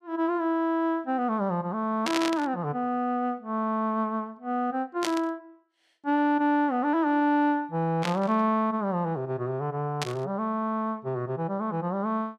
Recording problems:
burst of static; 4 times, first at 2 s; peak +2 dB vs average level

